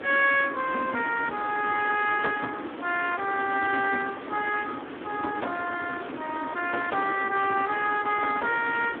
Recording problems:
telephone audio; 260 Hz to 3.5 kHz, Speex
background hiss; SNR 10 dB

